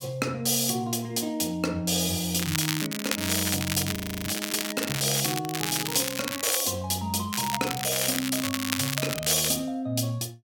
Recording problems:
crackle; from 2.5 to 6.5 s and from 7.5 to 9.5 s; loose cable, SNR 3 dB
frozen audio; at 4 s

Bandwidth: 17 kHz